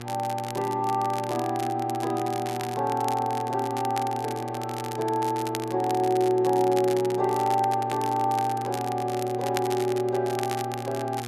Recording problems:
hum; 60 Hz, harmonics up to 1.7 kHz, SNR 11 dB
crackling; vinyl, SNR 14 dB

